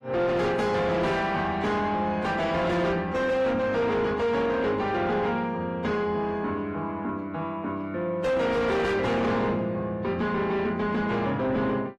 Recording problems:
lossy codec; AAC, log-spectral distance 2 dB, nothing above 13.7 kHz
distortion; soft clipping, signal-to-distortion ratio 8 dB

